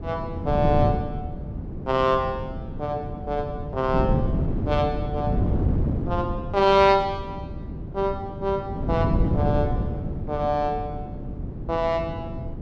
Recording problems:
wind noise; below 220 Hz, SNR 3 dB

